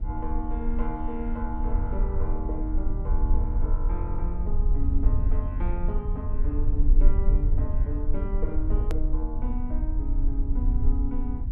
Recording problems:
rumble; below 50 Hz, strongest tone 26 Hz, SNR -7 dB
hard cut with a click; at 9 s

